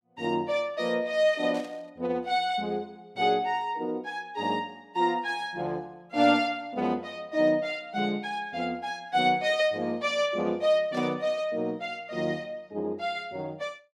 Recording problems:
burst of static; at 1.5 s and at 11 s; peak -13 dB vs average level

